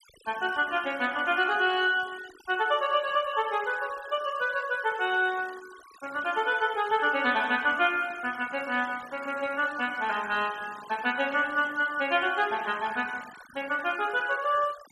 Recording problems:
noise reduction artefacts; signal-to-artefact ratio 19 dB

